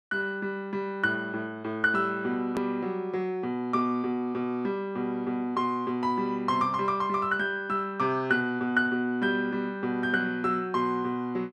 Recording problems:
hard cut with a click; at 2.5 s

